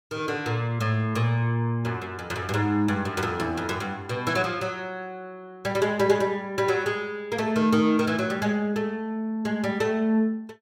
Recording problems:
none

